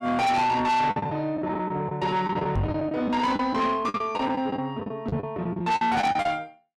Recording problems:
distortion; soft clipping, signal-to-distortion ratio 8 dB
lost packets; 13% of the sound replaced, filled with the last packet
microphone thump; at 2.5 s and at 5 s; peak +2 dB vs average level

